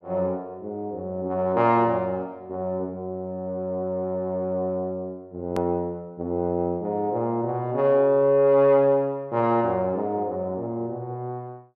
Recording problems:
edit click; at 5.5 s

